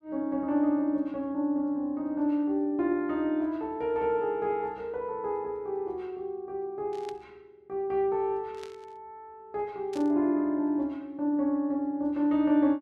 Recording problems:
static burst; at 7 s, at 8.5 s and at 10 s; peak -13 dB vs average level

